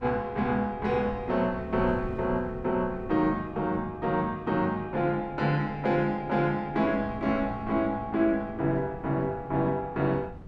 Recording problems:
wind on the microphone; below 210 Hz, SNR 16 dB

